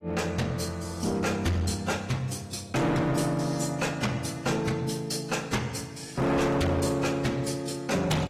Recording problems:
lossy compression; AAC, log-spectral distance 4 dB
distorted audio; hard clipping, uneven, signal-to-distortion ratio 6 dB

